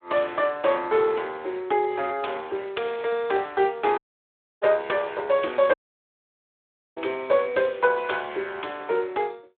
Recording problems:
telephone audio; 320 Hz to 3.6 kHz, Speex
audio cutting out; at 4 s for 0.5 s and at 5.5 s for 1 s

